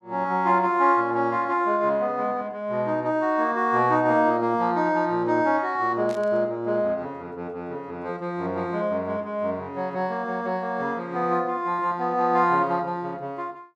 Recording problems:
static burst; at 6 s; peak -15 dB vs average level

